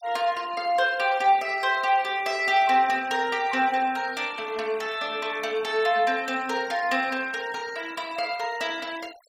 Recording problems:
denoising artefacts; signal-to-artefact ratio 20 dB

